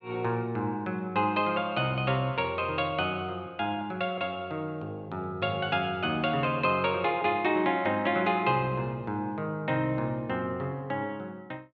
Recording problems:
none

